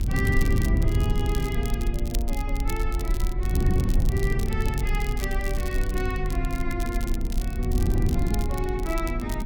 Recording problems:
electrical hum; 50 Hz, harmonics up to 1.3 kHz, SNR 20 dB
rumble; below 46 Hz, strongest tone 30 Hz, SNR 0 dB
wind on the microphone; below 130 Hz, SNR -2 dB
crackling; vinyl, SNR 10 dB

